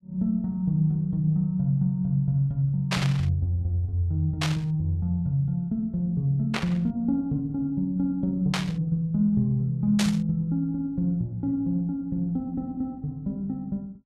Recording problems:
static burst; 5 times, first at 3 s; peak +2 dB vs average level

